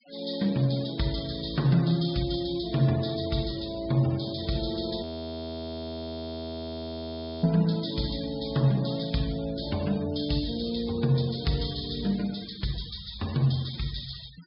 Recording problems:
treble missing; nothing above 5.5 kHz
noise reduction artefacts; signal-to-artefact ratio 18 dB
audio freezing; at 5 s for 2.5 s

